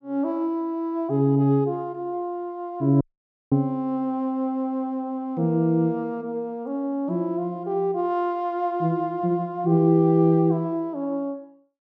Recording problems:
dropout; at 3 s for 0.5 s

